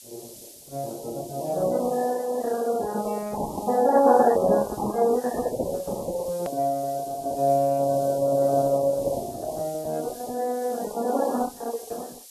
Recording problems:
lossy codec; Opus, then MP3, log-spectral distance 3 dB
hiss; slope +8 dB per octave, SNR 19 dB
hard cut with a click; at 6.5 s

